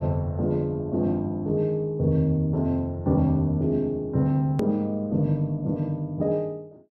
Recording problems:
hard cut with a click; at 4.5 s

